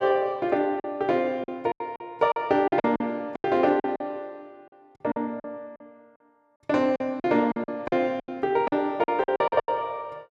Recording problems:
packet loss; 13% of the sound replaced, filled with silence

